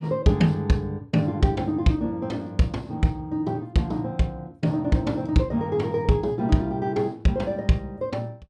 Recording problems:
none

